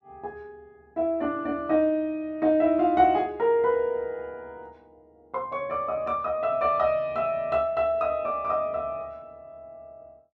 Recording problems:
none

